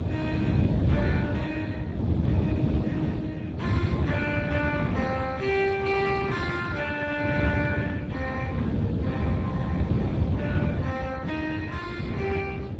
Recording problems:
lossy codec; Speex, log-spectral distance 4 dB, nothing above 7.3 kHz
wind on the microphone; below 280 Hz, SNR -2 dB

